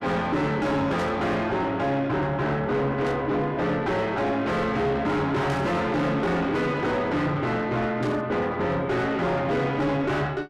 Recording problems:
distortion; soft clipping, signal-to-distortion ratio 5 dB
burst of static; 4 times, first at 1 s; peak -11 dB vs average level

